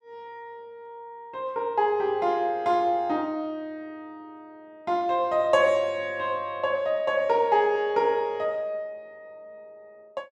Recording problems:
none

